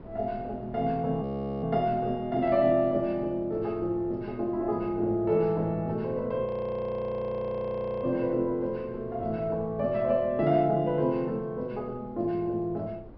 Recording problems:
treble missing; nothing above 5.3 kHz
wind noise; below 450 Hz, SNR 20 dB
audio freezing; at 1 s and at 6.5 s for 1.5 s

